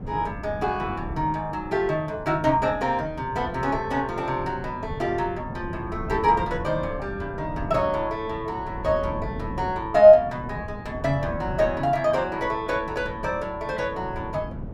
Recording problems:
wind noise; below 230 Hz, SNR 12 dB

